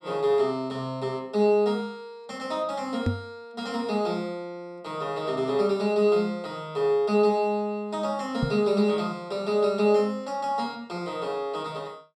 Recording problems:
knock on the microphone; at 3 s and at 8.5 s; peak +4 dB vs average level

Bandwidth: 12 kHz